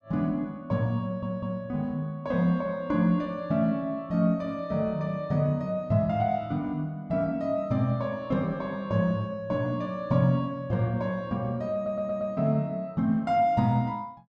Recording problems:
stutter; at 1 s and at 12 s

